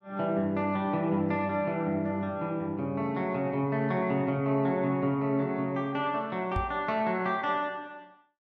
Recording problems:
microphone bump; at 6.5 s; peak 0 dB vs average level

